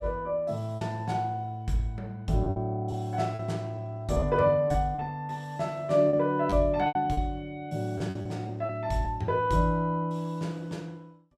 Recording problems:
packet loss; 7% of the sound replaced, filled with repeated pitch periods

